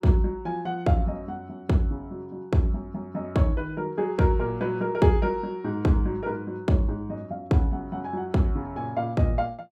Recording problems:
none

